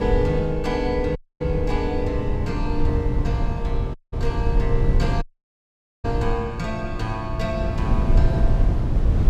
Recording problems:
low-frequency rumble; below 100 Hz, SNR -2 dB
audio cutting out; at 1 s, at 4 s and at 5 s for 1 s

